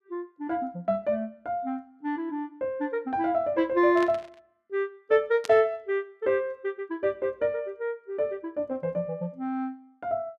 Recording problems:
burst of static; at 4 s and at 5.5 s; peak -4 dB vs average level

